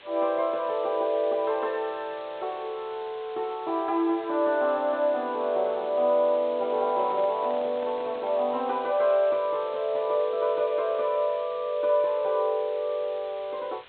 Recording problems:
treble cut off; nothing above 4 kHz
hiss; SNR 22 dB
microphone handling noise; from 7 to 8.5 s; peak -10 dB vs average level

